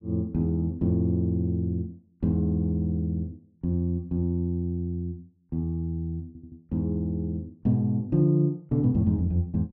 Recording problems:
stutter; at 6.5 s

